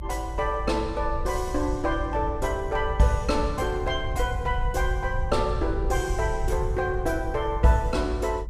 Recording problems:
low-frequency rumble; below 76 Hz, SNR 5 dB

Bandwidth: 15 kHz